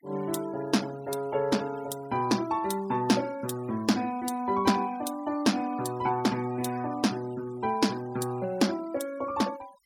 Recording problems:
noise reduction artefacts; signal-to-artefact ratio 19 dB

